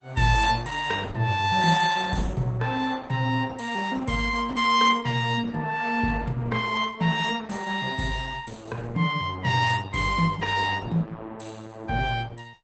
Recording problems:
lossy compression; Opus, log-spectral distance 4 dB, nothing above 7.8 kHz

